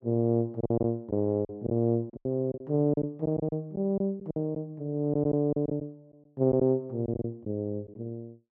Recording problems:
packet loss; 9% of the sound replaced, filled with silence

